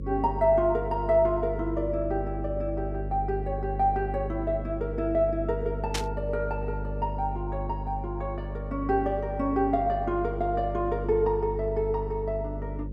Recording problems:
hum; 50 Hz, harmonics up to 550 Hz, SNR 7 dB
static burst; at 6 s; peak +2 dB vs average level

